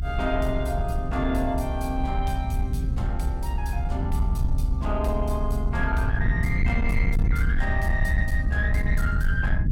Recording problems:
distorted audio; soft clipping, signal-to-distortion ratio 12 dB
rumble; below 84 Hz, SNR -2 dB

